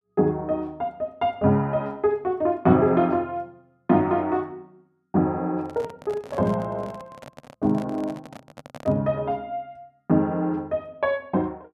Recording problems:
microphone handling noise; from 5.5 to 9 s; peak -10 dB vs average level

